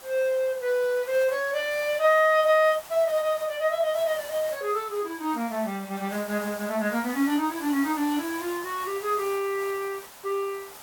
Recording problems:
background hiss; SNR 15 dB

